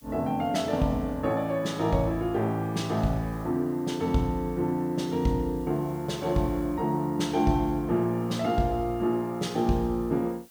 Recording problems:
background hiss; slope +1 dB per octave, SNR 27 dB

